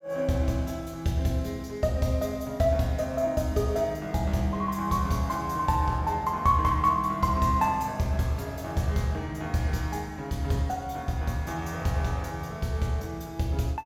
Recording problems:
none

